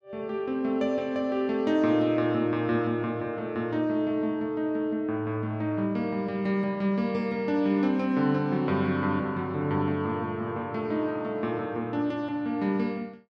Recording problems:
none

